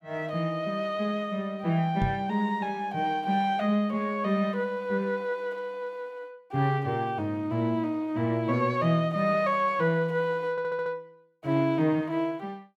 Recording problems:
microphone bump; at 2 s; peak +2 dB vs average level
audio stuttering; at 11 s

